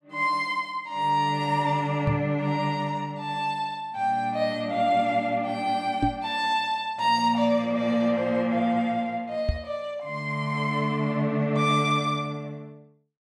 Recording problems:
microphone bump; at 2 s, at 6 s and at 9.5 s; peak +4 dB vs average level

